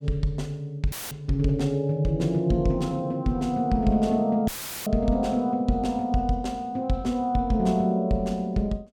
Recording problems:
audio cutting out; at 1 s and at 4.5 s; filled with static

